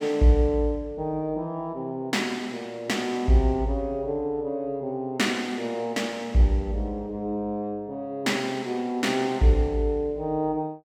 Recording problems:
none

